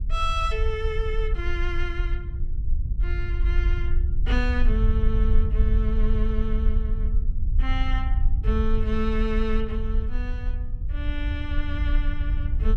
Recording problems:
low-frequency rumble; below 58 Hz, SNR -5 dB

